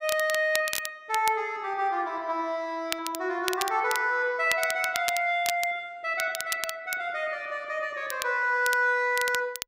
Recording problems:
crackling; vinyl, SNR 8 dB

